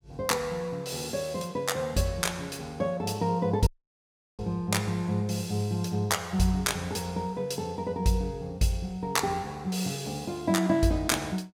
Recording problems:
dropout; at 3.5 s for 0.5 s

